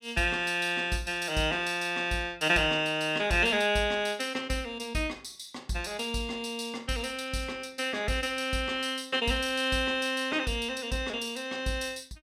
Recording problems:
none

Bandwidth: 16 kHz